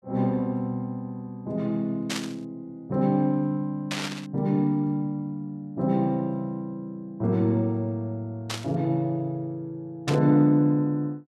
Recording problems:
burst of static; 4 times, first at 2 s; peak 0 dB vs average level

